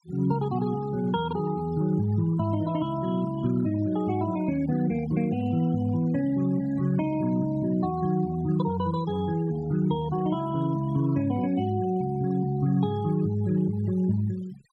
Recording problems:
denoising artefacts; signal-to-artefact ratio 21 dB

